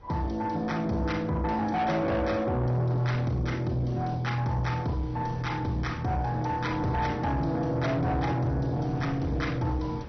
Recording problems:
codec artefacts; MP2, log-spectral distance 2 dB, nothing above 6 kHz
distortion; soft clipping, signal-to-distortion ratio 10 dB
wind on the microphone; below 390 Hz, SNR 18 dB

